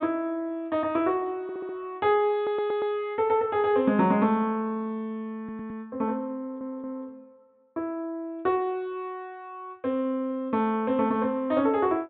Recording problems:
treble missing; nothing above 4 kHz
stutter; 4 times, first at 1.5 s

